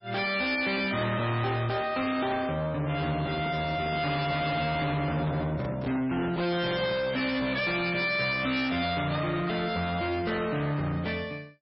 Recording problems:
codec artefacts; MP3, log-spectral distance 5 dB, nothing above 5.3 kHz
distortion; soft clipping, signal-to-distortion ratio 8 dB
handling noise; from 3 to 7 s; peak -5 dB vs average level

